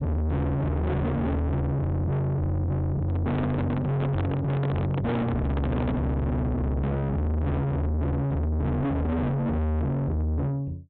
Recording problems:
treble missing; nothing above 4 kHz
distorted audio; soft clipping, signal-to-distortion ratio 6 dB
microphone handling noise; from 3 to 6 s; peak +5 dB vs average level

